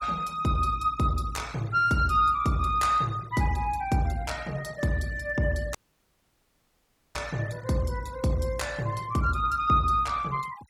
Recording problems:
noise reduction artefacts; signal-to-artefact ratio 22 dB
audio cutting out; at 6 s for 1.5 s

